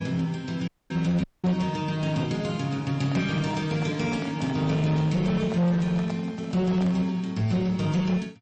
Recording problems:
codec artefacts; MP3, log-spectral distance 2 dB, nothing above 7.8 kHz
distorted audio; hard clipping, uneven, signal-to-distortion ratio 9 dB
dropout; at 0.5 s and at 1 s
handling noise; from 3 to 7 s; peak -7 dB vs average level

